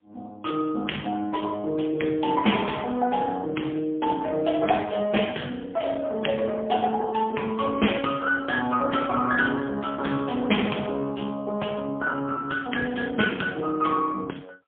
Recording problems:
telephone audio; 220 Hz to 3.3 kHz, AMR-NB, then MP3

